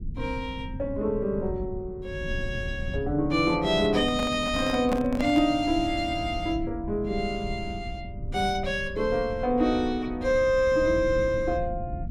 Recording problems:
low-frequency rumble; below 130 Hz, SNR 11 dB
handling noise; from 4 to 5.5 s; peak +1 dB vs average level

